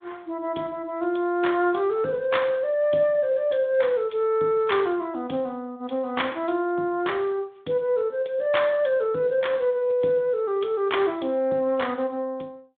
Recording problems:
telephone audio; 170 Hz to 3.6 kHz, Speex

